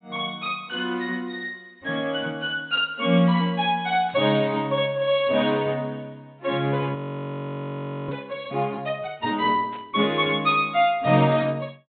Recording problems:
treble missing; nothing above 4 kHz
burst of static; 4 times, first at 4 s; peak -16 dB vs average level
frozen audio; at 7 s for 1 s

